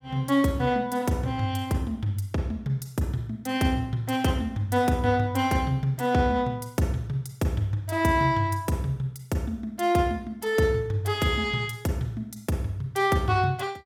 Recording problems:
none

